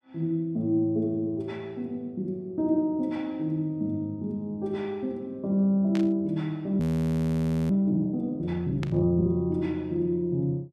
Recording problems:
static burst; at 6 s and at 9 s; peak -7 dB vs average level
frozen audio; at 7 s for 1 s

